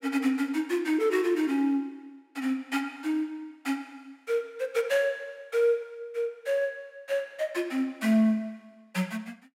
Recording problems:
none

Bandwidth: 16 kHz